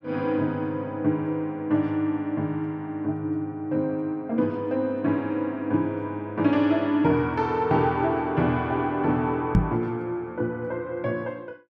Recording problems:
microphone thump; at 9.5 s; peak +9 dB vs average level

